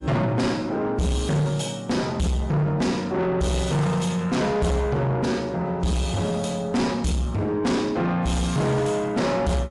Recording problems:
lossy compression; MP3, log-spectral distance 2 dB, nothing above 11 kHz
distortion; soft clipping, signal-to-distortion ratio 8 dB

